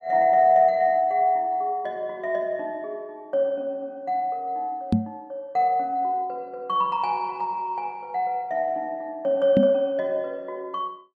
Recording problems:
microphone thump; at 5 s and at 9.5 s; peak +7 dB vs average level

